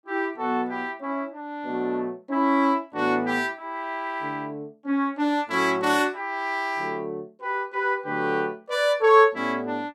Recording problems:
none

